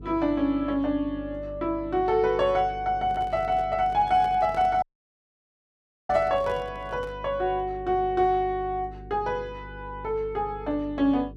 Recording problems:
mains hum; 50 Hz, harmonics up to 450 Hz, SNR 17 dB
microphone handling noise; from 3 to 7 s; peak -10 dB vs average level
audio cutting out; at 5 s for 1.5 s

